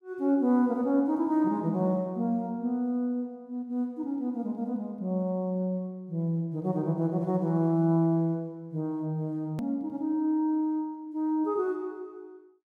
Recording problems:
hard cut with a click; at 9.5 s

